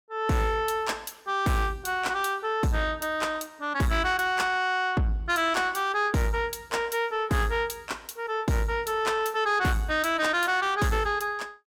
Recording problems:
distortion; soft clipping, signal-to-distortion ratio 11 dB

